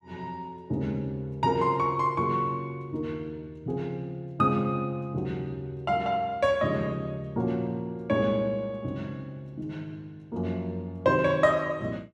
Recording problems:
none

